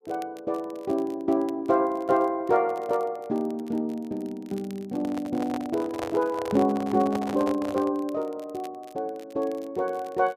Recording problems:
crackle; vinyl, SNR 28 dB
microphone handling noise; from 5 to 8 s; peak -2 dB vs average level

